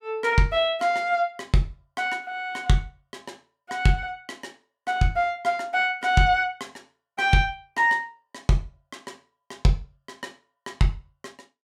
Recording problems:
none

